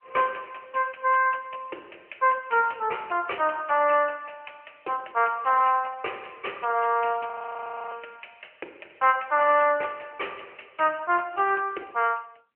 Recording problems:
telephone audio; 320 Hz to 3 kHz, AMR-NB
frozen audio; at 7.5 s for 0.5 s

